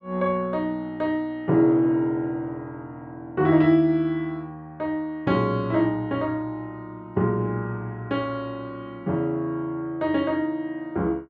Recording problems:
none

